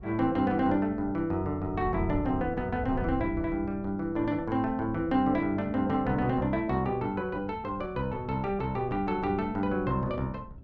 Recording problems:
wind noise; below 140 Hz, SNR 14 dB

